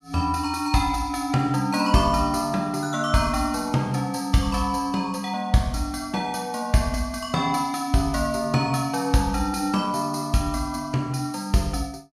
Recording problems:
none

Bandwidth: 15.5 kHz